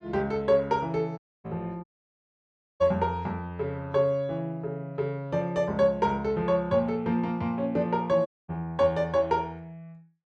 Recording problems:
dropout; at 1 s, at 2 s for 1 s and at 8.5 s

